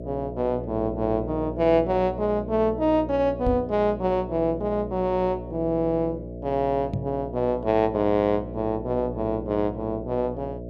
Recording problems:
hum; 60 Hz, harmonics up to 660 Hz, SNR 10 dB
microphone bump; at 3.5 s and at 7 s; peak +1 dB vs average level

